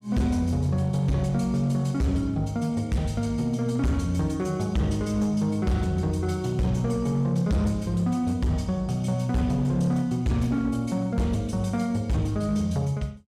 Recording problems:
distortion; hard clipping, signal-to-distortion ratio 12 dB

